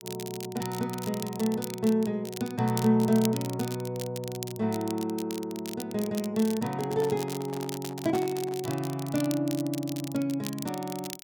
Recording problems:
crackling; vinyl, SNR 12 dB
microphone handling noise; from 7 to 8.5 s; peak -3 dB vs average level

